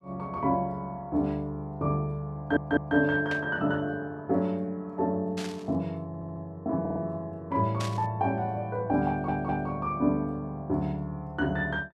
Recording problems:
audio stuttering; 4 times, first at 2.5 s
burst of static; at 3.5 s, at 5.5 s and at 8 s; peak -4 dB vs average level

